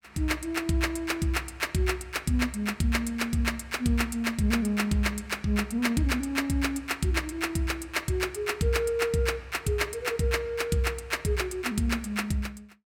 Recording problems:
none

